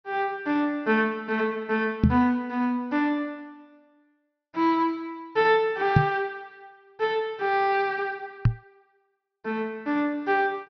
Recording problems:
treble missing; nothing above 6 kHz
microphone thump; at 2 s, at 6 s and at 8.5 s; peak +10 dB vs average level

